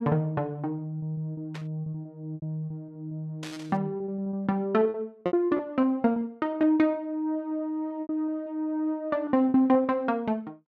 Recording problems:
packet loss; 14% of the sound replaced, filled with repeated pitch periods
burst of static; at 1.5 s and at 3.5 s; peak -8 dB vs average level

